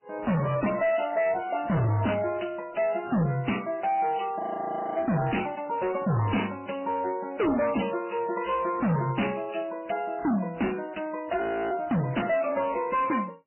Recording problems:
lossy codec; MP3, then MP3, log-spectral distance 6 dB, nothing above 3 kHz
distortion; hard clipping, signal-to-distortion ratio 5 dB
frozen audio; at 4.5 s for 0.5 s and at 11 s

